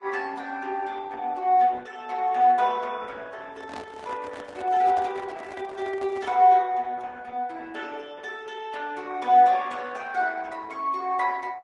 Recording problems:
lossy compression; Opus, then Vorbis, log-spectral distance 3 dB, nothing above 10.4 kHz
microphone handling noise; from 3.5 to 6.5 s; peak -11 dB vs average level

